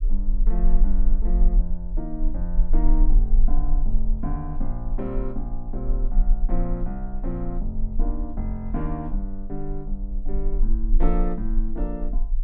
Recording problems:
rumble; below 34 Hz, strongest tone 20 Hz, SNR -5 dB

